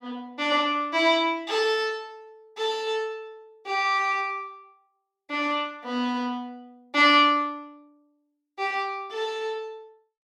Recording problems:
none

